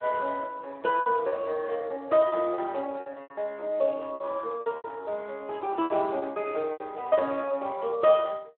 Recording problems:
phone line; 300 Hz to 3.1 kHz, Speex
lost packets; 11% of the sound replaced, filled with repeated pitch periods

